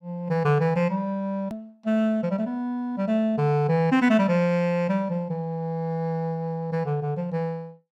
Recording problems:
edit click; at 1.5 s

